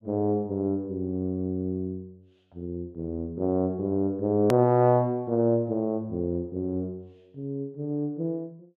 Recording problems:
edit click; at 4.5 s

